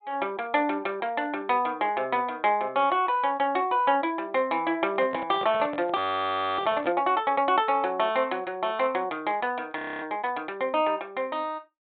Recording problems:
low-pass filter; nothing above 4 kHz
handling noise; from 5 to 7 s; peak -6 dB vs average level
frozen audio; at 6 s for 0.5 s and at 10 s

